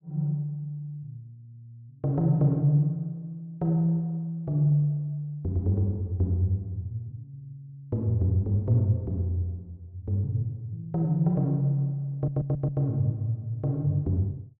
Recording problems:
stutter; at 12 s

